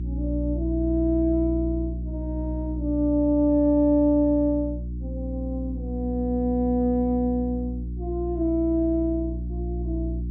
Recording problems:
treble missing; nothing above 4 kHz
mains hum; 60 Hz, harmonics up to 360 Hz, SNR 7 dB

